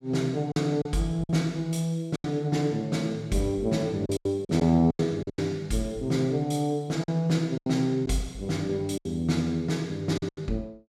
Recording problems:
lost packets; 8% of the sound replaced, filled with silence

